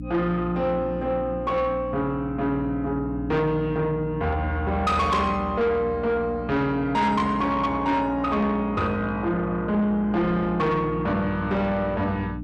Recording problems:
distorted audio; soft clipping, signal-to-distortion ratio 11 dB
electrical hum; 60 Hz, harmonics up to 300 Hz, SNR 10 dB

